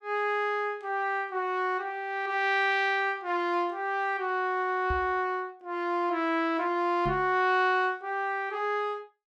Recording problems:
knock on the microphone; at 5 s and at 7 s; peak -3 dB vs average level

